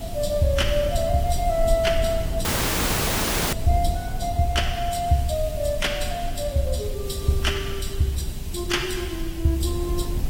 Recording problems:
codec artefacts; AAC, log-spectral distance 4 dB, nothing above 15.1 kHz
background hiss; SNR 17 dB
rumble; below 78 Hz, SNR 6 dB
audio cutting out; at 2.5 s for 1 s

